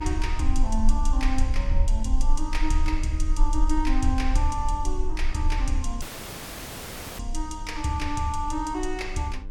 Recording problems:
hum; 50 Hz, harmonics up to 1.6 kHz, SNR 17 dB
rumble; below 38 Hz, strongest tone 20 Hz, SNR 0 dB
audio cutting out; at 6 s for 1 s

